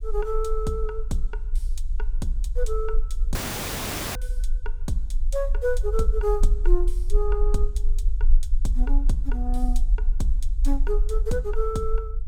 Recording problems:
rumble; below 40 Hz, strongest tone 22 Hz, SNR -3 dB
dropout; at 3.5 s for 1 s

